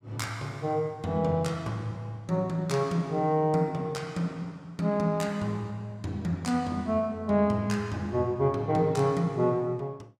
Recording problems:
none

